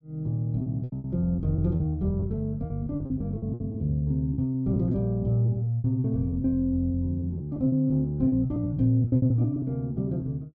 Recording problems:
packet loss; 15% of the sound replaced, filled with repeated pitch periods

